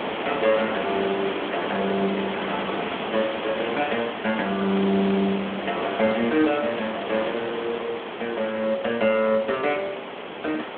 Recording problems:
telephone audio; 150 Hz to 3.4 kHz, Speex
background hiss; SNR 5 dB

